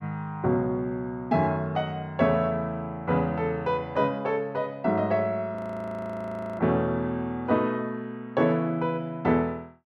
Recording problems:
frozen audio; at 5.5 s for 1 s

